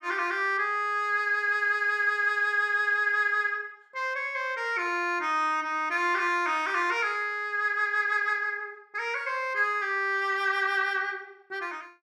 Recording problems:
none

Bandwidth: 14.5 kHz